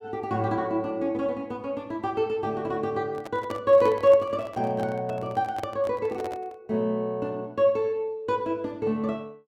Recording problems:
microphone handling noise; from 3 to 6.5 s; peak -6 dB vs average level

